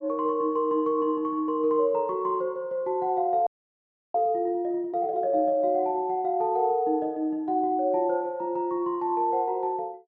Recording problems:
audio freezing; at 3.5 s for 0.5 s

